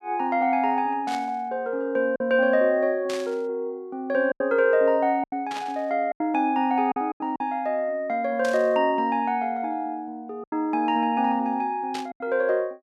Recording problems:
packet loss; 5% of the sound replaced, filled with silence
burst of static; 5 times, first at 1 s; peak -7 dB vs average level

